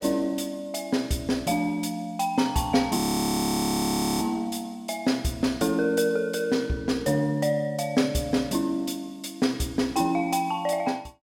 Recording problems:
audio freezing; at 3 s for 1 s

